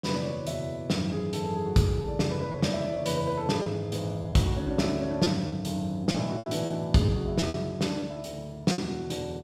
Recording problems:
packet loss; 6% of the sound replaced, filled with repeated pitch periods

